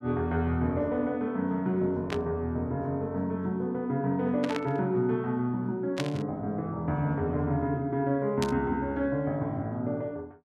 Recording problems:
static burst; 4 times, first at 2 s; peak 0 dB vs average level

